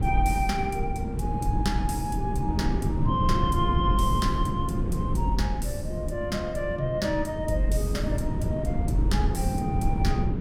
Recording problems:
wind on the microphone; below 190 Hz, SNR 0 dB

